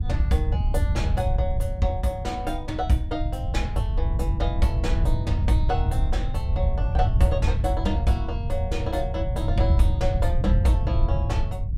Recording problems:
wind on the microphone; below 92 Hz, SNR -3 dB

